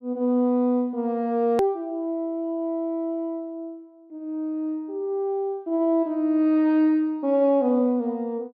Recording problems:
edit click; at 1.5 s

